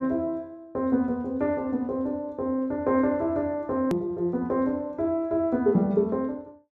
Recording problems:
click at an edit; at 4 s

